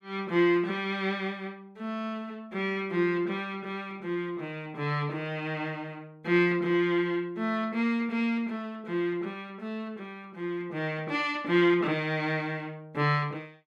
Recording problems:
none

